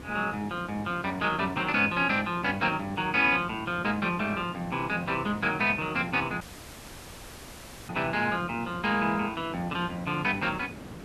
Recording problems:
background hiss; slope -6 dB per octave, SNR 14 dB
dropout; at 6.5 s for 1.5 s

